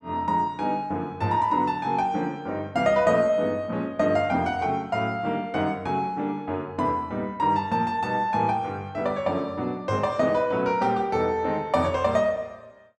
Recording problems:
none

